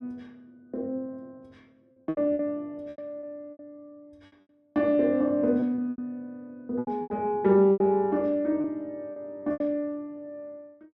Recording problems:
packet loss; 9% of the sound replaced, filled with repeated pitch periods

